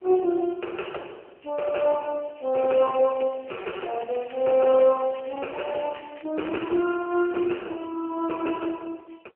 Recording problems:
phone line; 300 Hz to 2.5 kHz, AMR-NB
crackle; from 2.5 to 6 s and from 6.5 to 7.5 s; loose cable, SNR 22 dB

